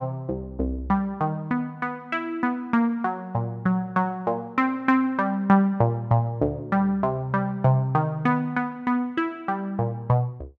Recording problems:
none

